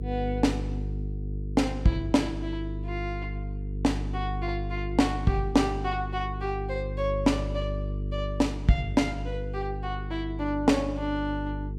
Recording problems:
hum; 50 Hz, harmonics up to 450 Hz, SNR 5 dB

